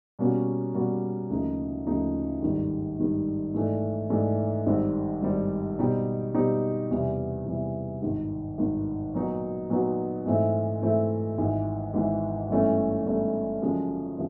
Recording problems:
none

